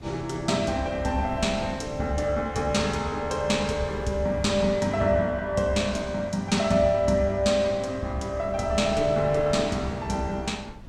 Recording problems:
wind noise; below 240 Hz, SNR 17 dB

